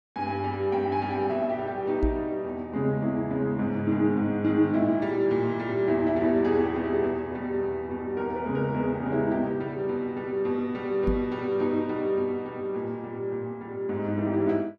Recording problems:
microphone bump; at 2 s and at 11 s; peak +2 dB vs average level

